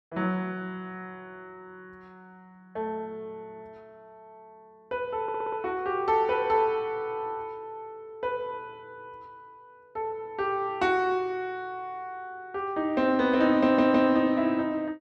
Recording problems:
stutter; at 5 s and at 14 s

